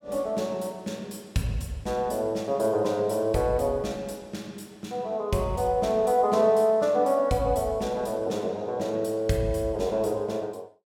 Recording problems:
none

